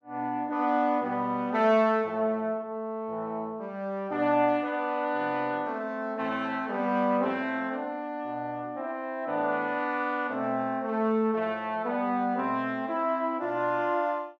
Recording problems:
none

